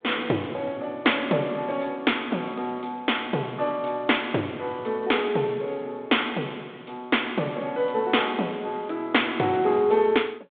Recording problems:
telephone audio; 190 Hz to 3.6 kHz, G.726

